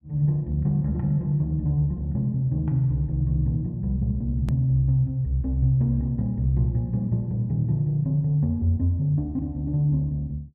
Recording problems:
edit click; at 4.5 s

